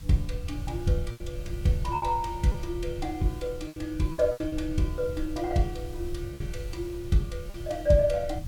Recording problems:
background hiss; slope +1 dB per octave, SNR 24 dB
low-frequency rumble; below 96 Hz, SNR 9 dB
packet loss; 6% of the sound replaced, filled with repeated pitch periods

